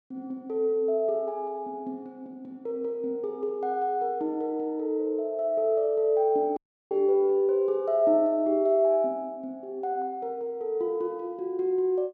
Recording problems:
dropout; at 6.5 s

